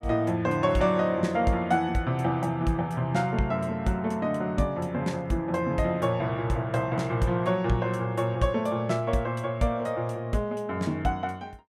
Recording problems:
none

